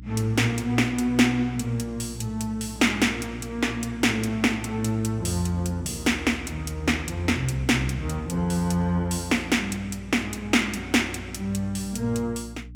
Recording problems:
hum; 60 Hz, harmonics up to 300 Hz, SNR 17 dB

